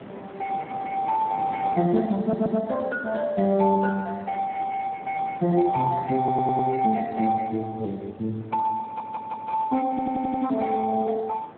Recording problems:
phone line; 130 Hz to 2.2 kHz, Speex
wind on the microphone; below 920 Hz, SNR 18 dB
audio stuttering; 4 times, first at 2 s

